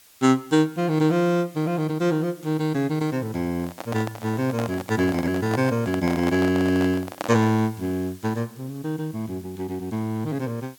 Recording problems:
background hiss; slope +1 dB per octave, SNR 24 dB
handling noise; from 3.5 to 7.5 s; peak -1 dB vs average level

